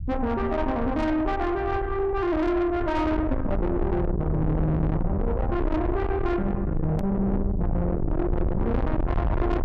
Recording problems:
distorted audio; soft clipping, signal-to-distortion ratio 6 dB
low-frequency rumble; below 200 Hz, SNR 3 dB
hard cut with a click; at 7 s

